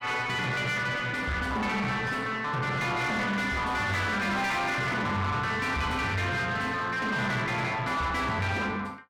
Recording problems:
distorted audio; soft clipping, signal-to-distortion ratio 6 dB

